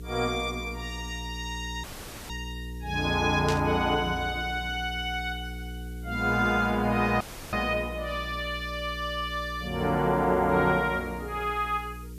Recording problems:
hum; 60 Hz, harmonics up to 480 Hz, SNR 12 dB
background hiss; slope +3 dB per octave, SNR 27 dB
dropout; at 2 s and at 7 s
burst of static; at 3.5 s; peak -1 dB vs average level

